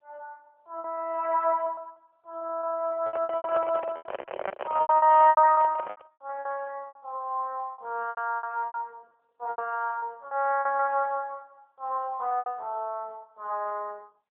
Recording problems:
telephone audio; 370 Hz to 2.8 kHz, AMR-NB
lost packets; 15% of the sound replaced, filled with repeated pitch periods
handling noise; from 3 to 6 s; peak -1 dB vs average level

